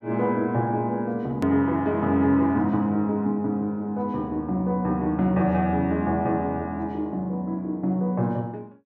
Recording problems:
hard cut with a click; at 1.5 s

